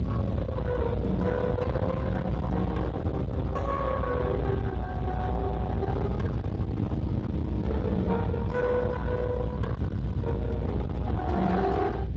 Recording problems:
codec artefacts; Speex, log-spectral distance 2 dB
distorted audio; soft clipping, signal-to-distortion ratio 7 dB
rumble; below 410 Hz, SNR 2 dB

